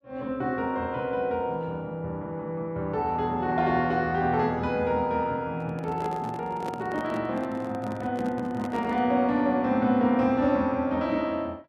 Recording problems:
microphone handling noise; from 5.5 to 9 s; peak -6 dB vs average level

